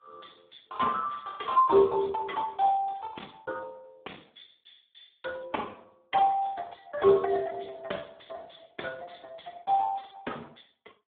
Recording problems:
phone line; 240 Hz to 3.5 kHz, Speex

